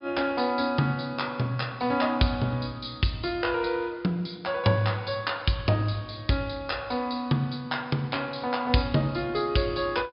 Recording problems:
treble missing; nothing above 5.5 kHz

